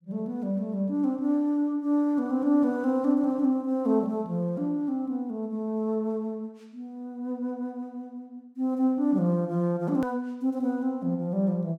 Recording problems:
hard cut with a click; at 10 s

